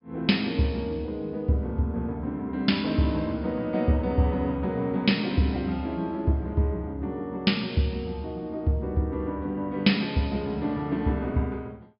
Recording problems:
treble cut off; nothing above 5.5 kHz

